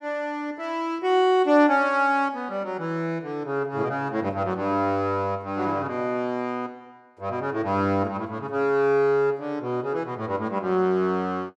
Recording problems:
none

